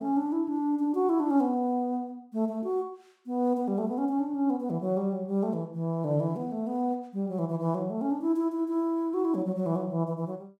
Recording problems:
none

